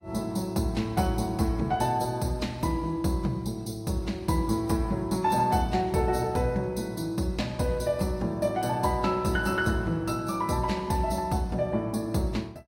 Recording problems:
lossy codec; AAC, log-spectral distance 2 dB, nothing above 16.5 kHz

